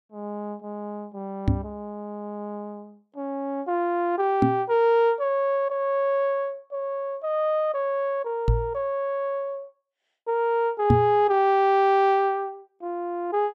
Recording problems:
knock on the microphone; 4 times, first at 1.5 s; peak +8 dB vs average level

